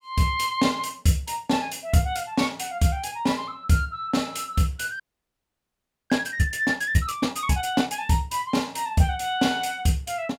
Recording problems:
frozen audio; at 5 s for 1 s

